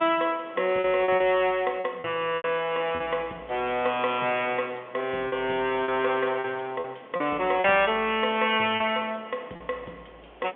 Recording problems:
telephone audio; 220 Hz to 3.4 kHz, G.711
background hiss; SNR 22 dB
lost packets; 6% of the sound replaced, filled with repeated pitch periods

